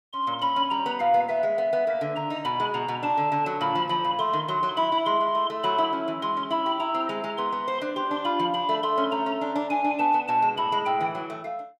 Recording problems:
none

